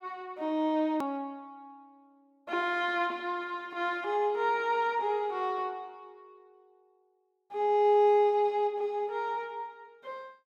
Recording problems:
edit click; at 1 s

